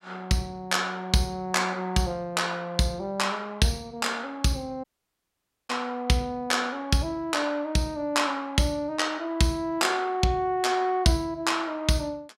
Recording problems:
dropout; at 5 s for 1 s

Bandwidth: 16 kHz